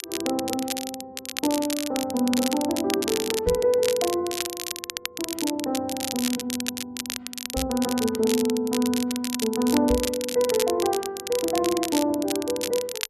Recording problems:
crackling; vinyl, SNR 6 dB
microphone thump; at 3.5 s, at 7.5 s and at 10 s; peak -1 dB vs average level

